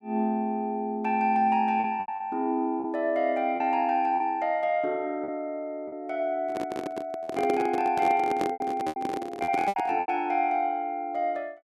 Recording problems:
lost packets; 7% of the sound replaced, filled with repeated pitch periods
handling noise; from 6.5 to 10 s; peak +2 dB vs average level

